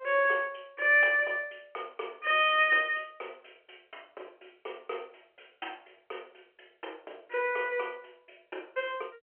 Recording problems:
telephone audio; 320 Hz to 3.3 kHz, G.711

